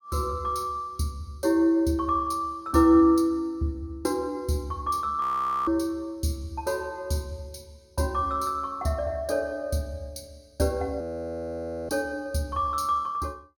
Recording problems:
audio freezing; at 5 s and at 11 s for 1 s

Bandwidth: 17.5 kHz